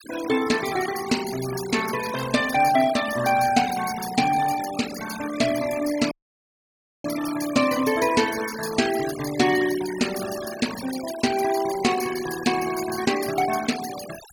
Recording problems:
denoising artefacts; signal-to-artefact ratio 11 dB
audio cutting out; at 6 s for 1 s

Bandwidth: 18 kHz